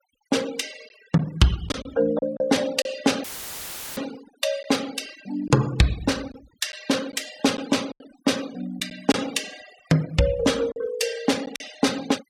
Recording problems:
denoising artefacts; signal-to-artefact ratio 16 dB
lost packets; 4% of the sound replaced, filled with silence
audio cutting out; at 3 s for 0.5 s; filled with static

